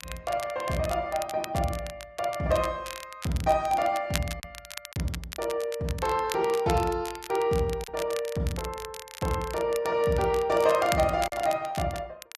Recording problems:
codec artefacts; Opus, log-spectral distance 2 dB
crackling; vinyl, SNR 13 dB
lost packets; 1.2% of the sound replaced, filled with silence

